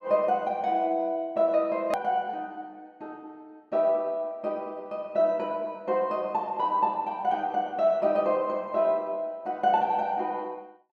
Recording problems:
click at an edit; at 2 s

